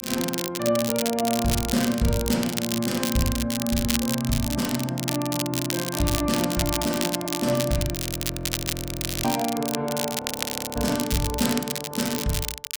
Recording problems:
crackling; vinyl, SNR 3 dB
frozen audio; at 8 s for 1.5 s and at 10 s for 0.5 s

